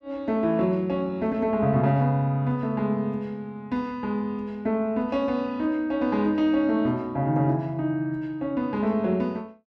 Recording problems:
none

